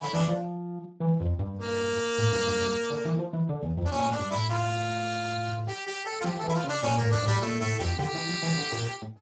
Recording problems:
lossy compression; Speex, log-spectral distance 6 dB, nothing above 7.6 kHz

